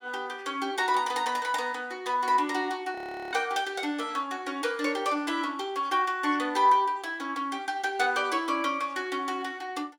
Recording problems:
frozen audio; at 3 s

